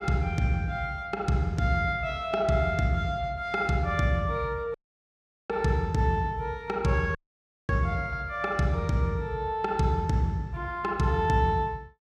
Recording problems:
dropout; at 4.5 s for 1 s and at 7 s for 0.5 s

